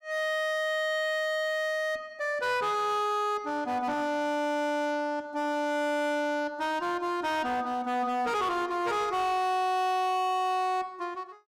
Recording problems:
distortion; hard clipping, signal-to-distortion ratio 10 dB

